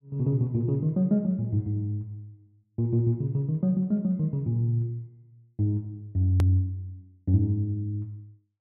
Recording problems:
click at an edit; at 6.5 s

